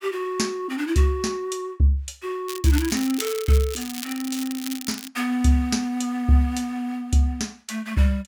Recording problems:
crackling; from 2.5 to 5 s; loose cable, SNR 10 dB

